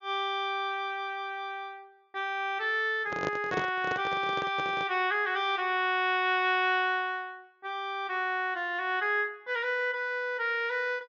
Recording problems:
low-pass filter; nothing above 6.9 kHz
handling noise; from 3 to 5 s; peak +1 dB vs average level

